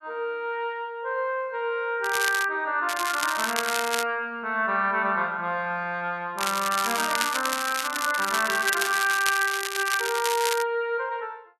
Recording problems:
crackle; at 2 s, from 3 to 4 s and from 6.5 to 11 s; loose cable, SNR 4 dB

